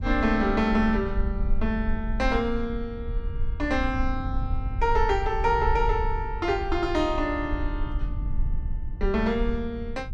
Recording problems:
low-frequency rumble; below 62 Hz, SNR 5 dB

